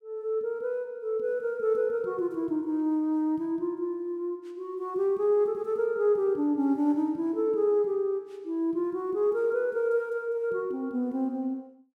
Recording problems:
none

